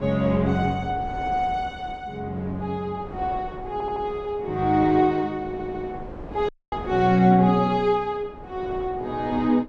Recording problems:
wind noise; below 570 Hz, SNR 15 dB
stutter; at 3.5 s and at 5.5 s
dropout; at 6.5 s

